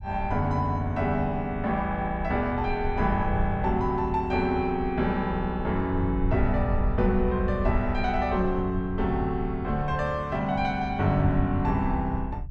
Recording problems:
rumble; below 86 Hz, SNR 8 dB

